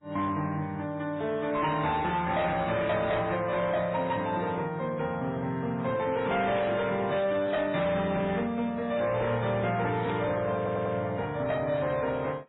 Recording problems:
lossy compression; MP3, then AAC, log-spectral distance 3 dB, nothing above 3.4 kHz
distortion; hard clipping, signal-to-distortion ratio 11 dB
static burst; at 6.5 s and at 10 s; peak -10 dB vs average level
audio stuttering; at 11 s

